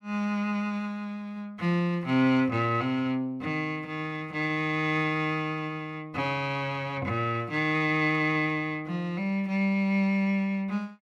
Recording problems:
none

